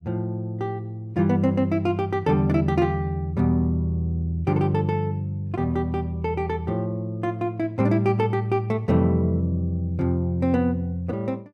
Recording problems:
none

